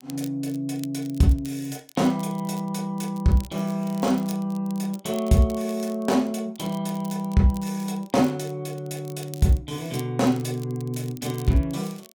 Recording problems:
crackle; vinyl, SNR 21 dB

